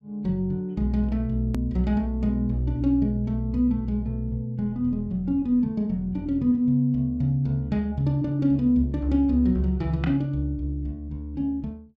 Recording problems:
hard cut with a click; at 1.5 s

